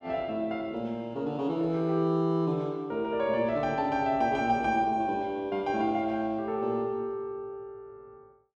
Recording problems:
none

